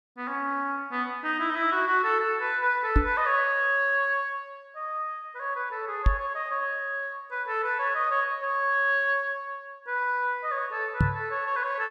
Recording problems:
knock on the microphone; at 3 s, at 6 s and at 11 s; peak +8 dB vs average level

